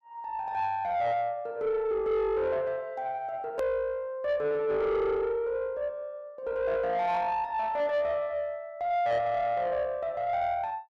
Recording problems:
distortion; soft clipping, signal-to-distortion ratio 11 dB
click at an edit; at 3.5 s

